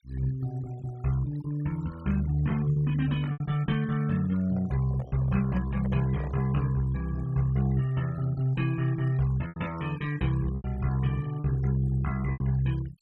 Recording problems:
denoising artefacts; signal-to-artefact ratio 21 dB
lost packets; 3% of the sound replaced, filled with repeated pitch periods
handling noise; from 4.5 to 6.5 s; peak -10 dB vs average level

